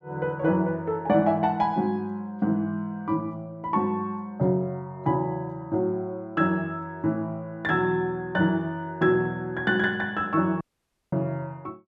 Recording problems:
audio cutting out; at 11 s for 0.5 s

